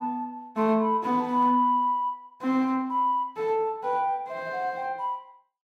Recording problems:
none

